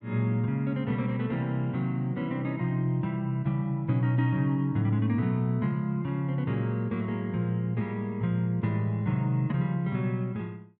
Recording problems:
none

